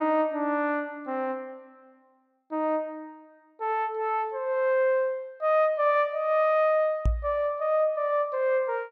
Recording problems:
microphone thump; at 7 s; peak +3 dB vs average level

